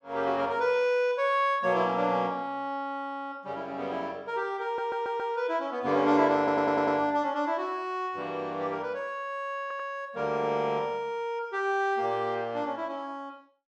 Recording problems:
audio stuttering; at 4.5 s, at 6.5 s and at 9.5 s

